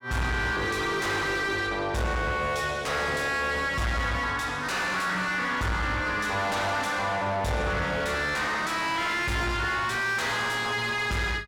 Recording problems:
distorted audio; soft clipping, signal-to-distortion ratio 7 dB

